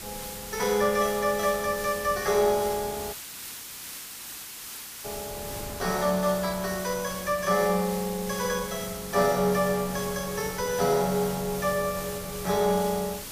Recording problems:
lossy compression; Vorbis, log-spectral distance 2 dB, nothing above 10.7 kHz
hiss; slope +1 dB per octave, SNR 10 dB
wind noise; below 630 Hz, SNR 18 dB
dropout; at 3 s for 2 s

